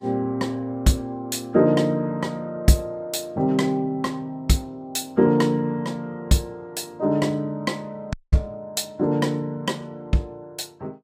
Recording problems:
codec artefacts; Vorbis, log-spectral distance 2 dB, nothing above 15.1 kHz
audio cutting out; at 8 s

